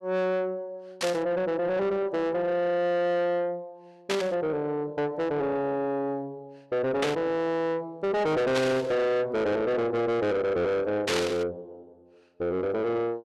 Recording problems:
distortion; soft clipping, signal-to-distortion ratio 7 dB
burst of static; 5 times, first at 1 s; peak +3 dB vs average level

